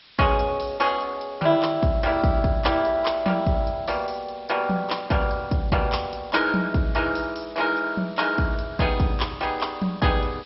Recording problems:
lossy codec; MP2, log-spectral distance 6 dB, nothing above 5.5 kHz
background hiss; SNR 25 dB

